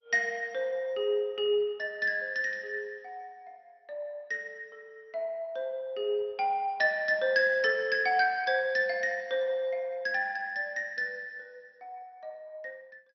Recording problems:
codec artefacts; MP2, log-spectral distance 2 dB, nothing above 5 kHz

